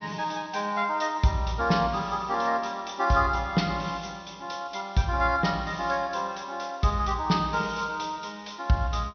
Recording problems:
treble cut off; nothing above 6 kHz

